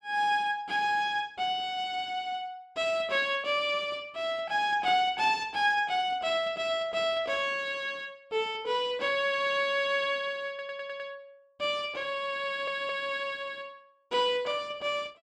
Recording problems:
audio stuttering; at 10 s and at 12 s

